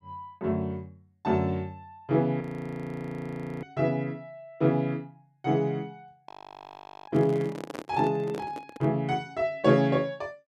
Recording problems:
frozen audio; at 2.5 s for 1 s and at 6.5 s for 1 s
microphone handling noise; from 7 to 9 s; peak -5 dB vs average level

